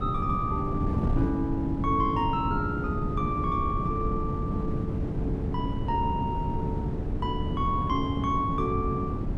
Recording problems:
wind on the microphone; below 220 Hz, SNR 0 dB

